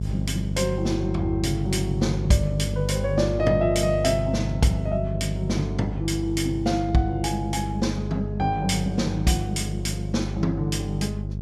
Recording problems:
mains hum; 50 Hz, harmonics up to 450 Hz, SNR 4 dB

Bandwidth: 13.5 kHz